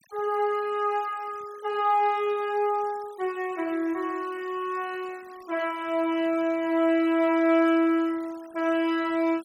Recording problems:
noise reduction artefacts; signal-to-artefact ratio 24 dB

